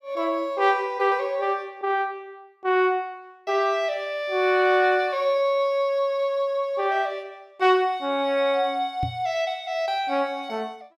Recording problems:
knock on the microphone; at 9 s; peak -2 dB vs average level

